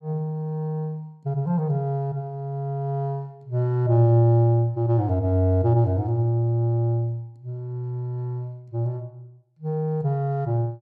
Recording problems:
none

